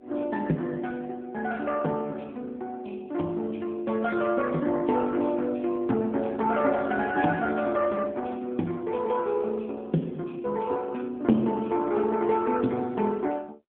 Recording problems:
telephone audio; 170 Hz to 3.5 kHz, AMR-NB

